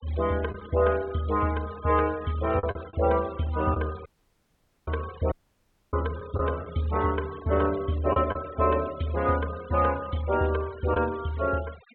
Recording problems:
treble cut off; nothing above 4 kHz
noise reduction artefacts; signal-to-artefact ratio 20 dB
packet loss; 2% of the sound replaced, filled with the last packet
dropout; at 4 s for 1 s and at 5.5 s for 0.5 s

